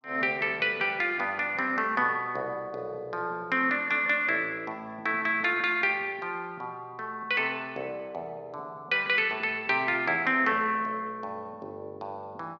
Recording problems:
none

